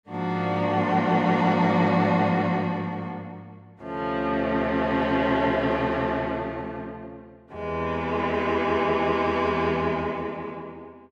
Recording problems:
none

